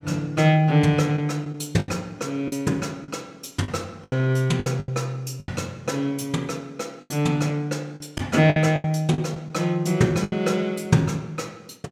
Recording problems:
lost packets; 8% of the sound replaced, filled with the last packet

